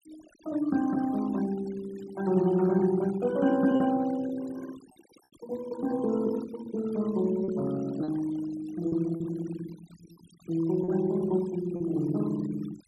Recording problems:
noise reduction artefacts; signal-to-artefact ratio 20 dB
packet loss; 3% of the sound replaced, filled with repeated pitch periods

